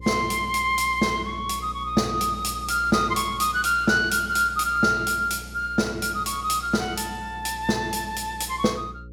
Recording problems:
electrical hum; 60 Hz, harmonics up to 540 Hz, SNR 17 dB

